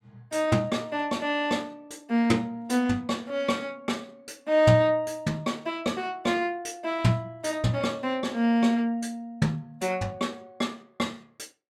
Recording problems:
none

